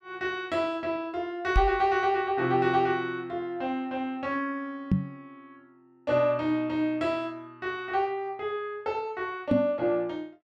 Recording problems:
knock on the microphone; at 1.5 s, at 5 s and at 9.5 s; peak +8 dB vs average level

